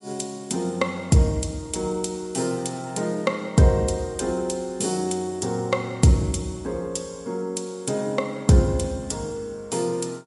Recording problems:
lossy codec; MP3, log-spectral distance 3 dB, nothing above 10.7 kHz

